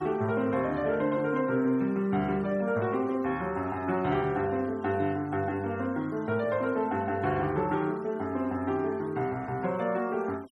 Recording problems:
noise reduction artefacts; signal-to-artefact ratio 27 dB

